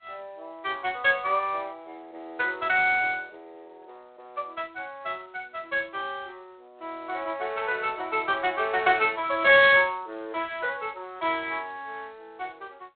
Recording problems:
phone line; 340 Hz to 4 kHz, G.726

